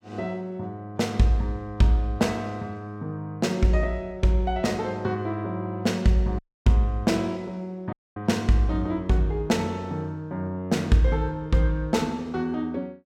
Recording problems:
audio cutting out; at 6.5 s and at 8 s

